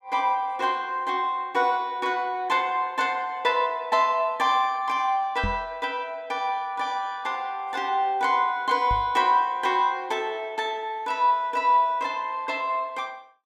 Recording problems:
knock on the microphone; at 5.5 s and at 9 s; peak -1 dB vs average level

